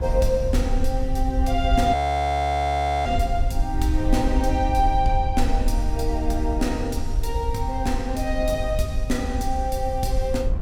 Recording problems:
rumble; below 66 Hz, SNR 3 dB
wind on the microphone; below 190 Hz, SNR 15 dB
audio freezing; at 2 s for 1 s

